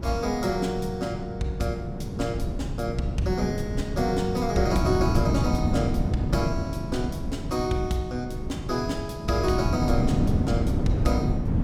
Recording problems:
wind noise; below 210 Hz, SNR 1 dB

